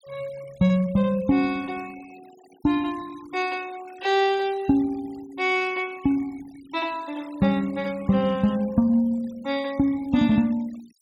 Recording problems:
noise reduction artefacts; signal-to-artefact ratio 24 dB

